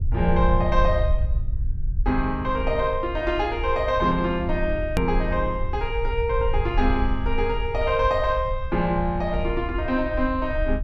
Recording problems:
low-frequency rumble; below 68 Hz, SNR 5 dB
click at an edit; at 5 s

